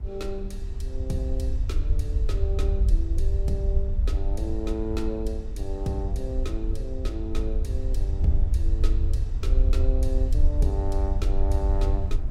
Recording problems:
hum; 60 Hz, harmonics up to 840 Hz, SNR 23 dB
rumble; below 68 Hz, SNR -7 dB
wind noise; below 120 Hz, SNR 8 dB

